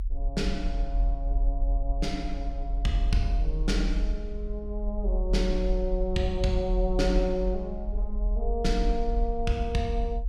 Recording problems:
rumble; below 44 Hz, strongest tone 40 Hz, SNR 0 dB

